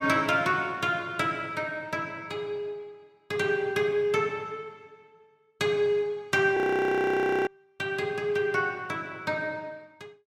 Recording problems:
audio freezing; at 6.5 s for 1 s

